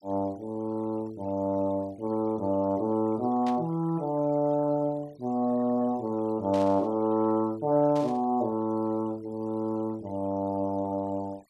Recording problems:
noise reduction artefacts; signal-to-artefact ratio 27 dB
burst of static; at 3.5 s, at 6.5 s and at 8 s; peak -11 dB vs average level

